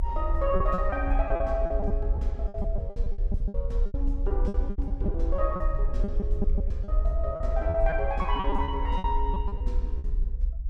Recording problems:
low-frequency rumble; below 58 Hz, SNR -2 dB
packet loss; 15% of the sound replaced, filled with repeated pitch periods

